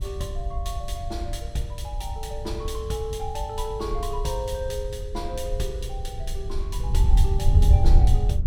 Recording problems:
wind noise; below 78 Hz, SNR -6 dB

